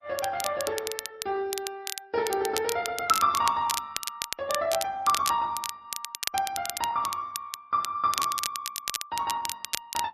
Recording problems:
lossy compression; MP3, then Opus, log-spectral distance 2 dB
crackle; vinyl, SNR 5 dB

